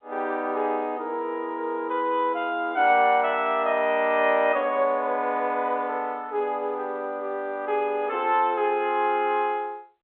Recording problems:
phone line; 260 Hz to 3.7 kHz, G.711

